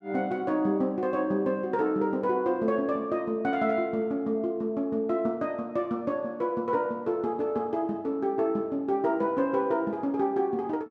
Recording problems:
none

